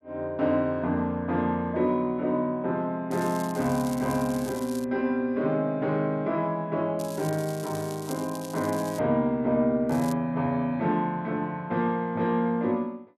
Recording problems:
crackling; from 3 to 5 s, from 7 to 9 s and at 10 s; loose cable, SNR 16 dB

